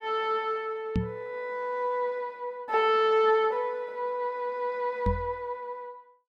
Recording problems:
microphone bump; at 1 s and at 5 s; peak +4 dB vs average level

